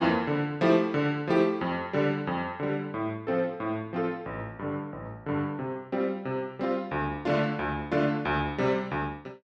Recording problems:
none

